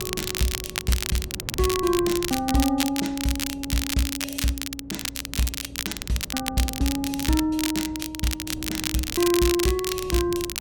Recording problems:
hum; 60 Hz, harmonics up to 600 Hz, SNR 21 dB
wind on the microphone; below 250 Hz, SNR 16 dB
crackling; vinyl, SNR 3 dB

